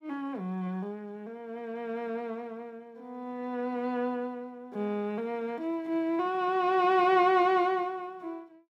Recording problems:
none

